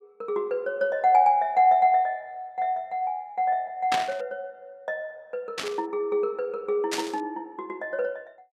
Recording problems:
burst of static; at 4 s, at 5.5 s and at 7 s; peak +1 dB vs average level

